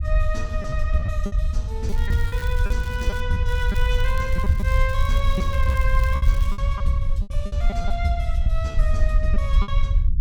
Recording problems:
low-frequency rumble; below 68 Hz, SNR -5 dB
lost packets; 9% of the sound replaced, filled with repeated pitch periods
crackle; from 2 to 3 s and from 3.5 to 6.5 s; loose cable, SNR 16 dB

